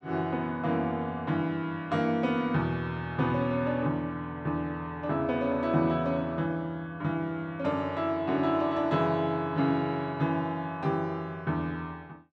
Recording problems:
none

